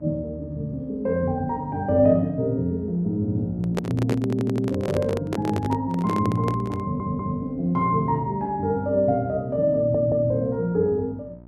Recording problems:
mains hum; 60 Hz, harmonics up to 1 kHz, SNR 23 dB
handling noise; from 3.5 to 7 s; peak +1 dB vs average level
audio stuttering; at 4 s, at 7 s and at 10 s

